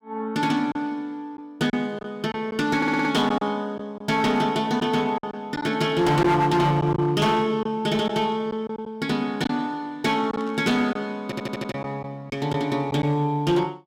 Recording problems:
distorted audio; hard clipping, signal-to-distortion ratio 12 dB
lost packets; 5% of the sound replaced, filled with silence
audio stuttering; at 3 s and at 11 s
static burst; at 10 s; peak -18 dB vs average level

